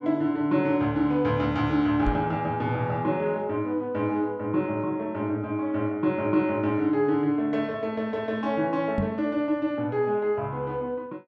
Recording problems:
microphone thump; at 2 s and at 9 s; peak +2 dB vs average level

